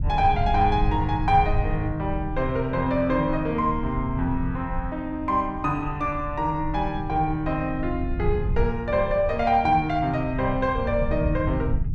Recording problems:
rumble; below 96 Hz, SNR 7 dB

